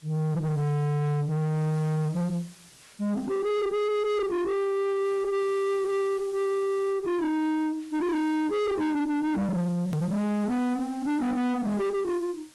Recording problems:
lossy codec; AAC, log-spectral distance 2 dB, nothing above 16.1 kHz
distortion; soft clipping, signal-to-distortion ratio 5 dB
background hiss; slope 0 dB per octave, SNR 26 dB
edit click; at 10 s

